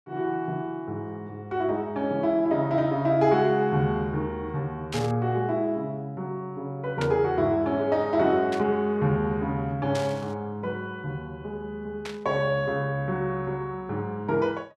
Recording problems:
static burst; 5 times, first at 5 s; peak -4 dB vs average level

